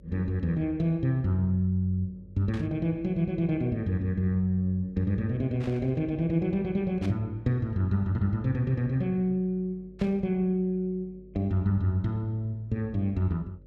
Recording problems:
hum; 50 Hz, harmonics up to 600 Hz, SNR 25 dB
burst of static; 4 times, first at 2.5 s; peak -11 dB vs average level

